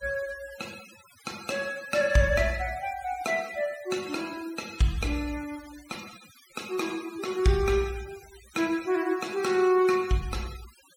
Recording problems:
denoising artefacts; signal-to-artefact ratio 17 dB

